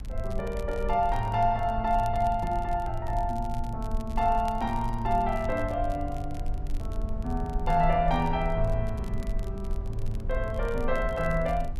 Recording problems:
low-frequency rumble; below 58 Hz, SNR 7 dB
crackling; vinyl, SNR 25 dB

